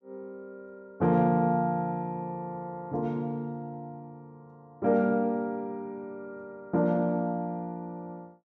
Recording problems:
none

